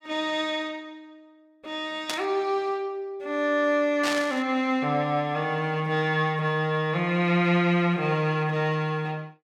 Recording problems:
static burst; at 2 s and at 4 s; peak 0 dB vs average level

